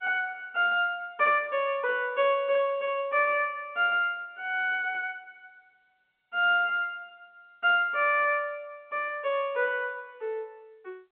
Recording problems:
phone line; 280 Hz to 3.3 kHz, G.711

